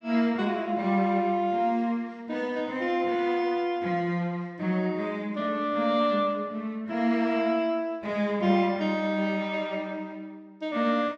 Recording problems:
none

